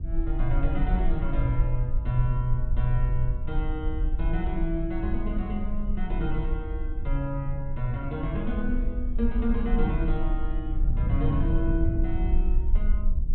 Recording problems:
low-pass filter; nothing above 4 kHz
rumble; below 48 Hz, strongest tone 20 Hz, SNR 0 dB
wind noise; below 100 Hz, SNR 4 dB

